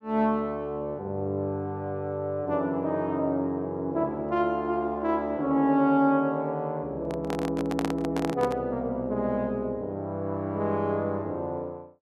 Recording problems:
handling noise; from 7 to 8.5 s; peak +1 dB vs average level

